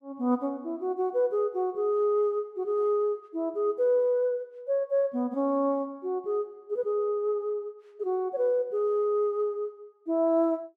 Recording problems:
none

